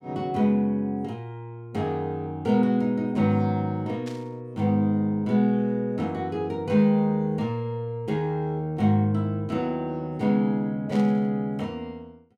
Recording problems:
static burst; at 4 s and at 11 s; peak -13 dB vs average level

